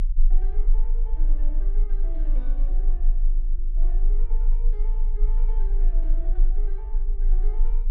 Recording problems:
rumble; below 28 Hz, strongest tone 26 Hz, SNR -21 dB

